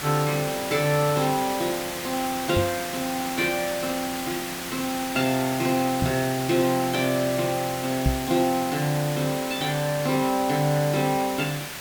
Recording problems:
background hiss; slope -1 dB per octave, SNR 7 dB
knock on the microphone; at 2.5 s, at 6 s and at 8 s; peak +5 dB vs average level

